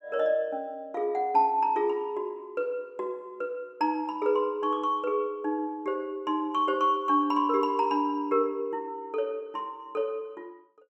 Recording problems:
none

